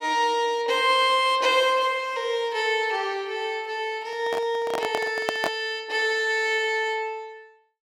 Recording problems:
handling noise; from 4 to 5.5 s; peak +1 dB vs average level

